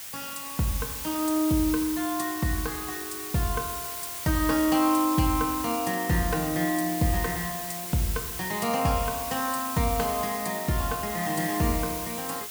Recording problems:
hiss; slope +1 dB per octave, SNR 6 dB

